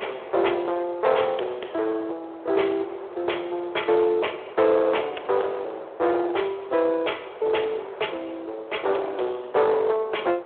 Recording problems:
phone line; 320 Hz to 3.5 kHz, Speex
distortion; hard clipping, signal-to-distortion ratio 11 dB
wind noise; below 960 Hz, SNR 17 dB

